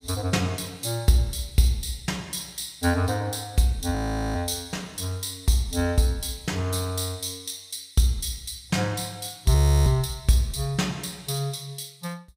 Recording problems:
audio freezing; at 4 s and at 9.5 s

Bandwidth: 15.5 kHz